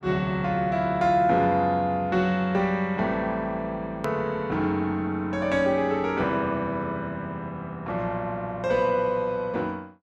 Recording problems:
click at an edit; at 4 s

